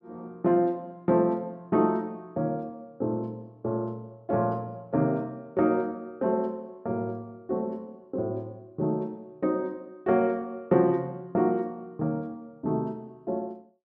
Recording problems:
none

